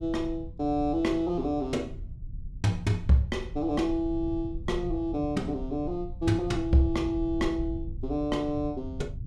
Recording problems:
rumble; below 94 Hz, SNR 11 dB

